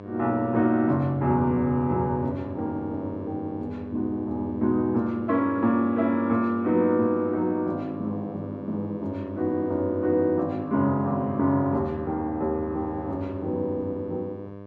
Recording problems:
hum; 50 Hz, harmonics up to 1.7 kHz, SNR 13 dB

